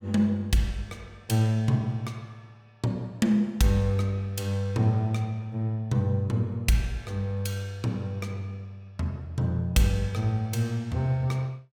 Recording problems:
none

